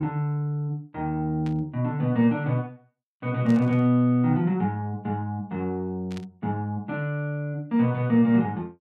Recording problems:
static burst; at 1.5 s, at 3.5 s and at 6 s; peak -14 dB vs average level

